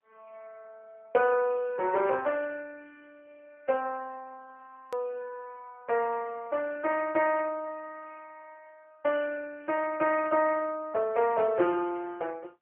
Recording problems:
telephone audio; 340 Hz to 3 kHz, AMR-NB
edit click; at 5 s

